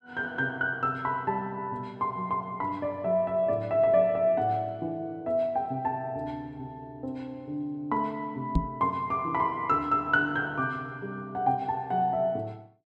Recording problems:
microphone bump; at 8.5 s; peak +7 dB vs average level

